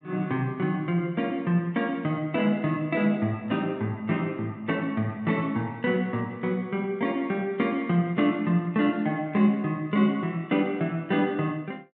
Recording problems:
treble missing; nothing above 4 kHz

